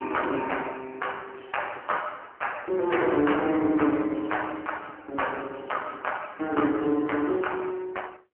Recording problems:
phone line; 220 Hz to 3.1 kHz, AMR-NB

